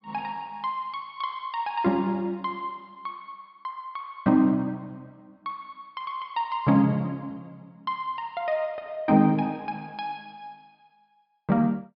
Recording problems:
treble missing; nothing above 5.5 kHz

